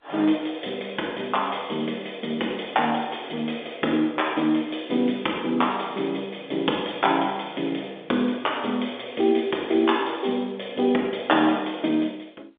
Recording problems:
phone line; 260 Hz to 3.6 kHz, G.711

